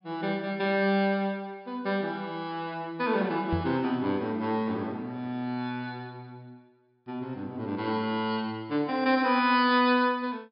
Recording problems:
treble cut off; nothing above 5.5 kHz
microphone bump; at 3.5 s; peak +2 dB vs average level

